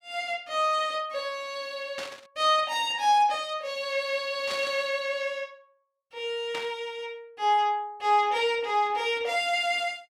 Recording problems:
burst of static; at 2 s, at 4.5 s and at 6.5 s; peak -5 dB vs average level

